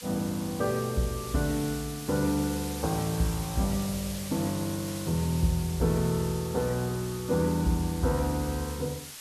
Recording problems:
hiss; slope +2 dB per octave, SNR 11 dB

